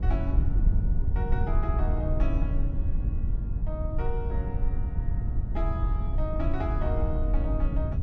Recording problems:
low-frequency rumble; below 80 Hz, SNR -8 dB

